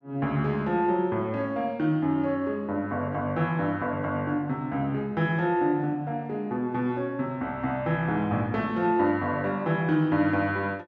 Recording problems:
none

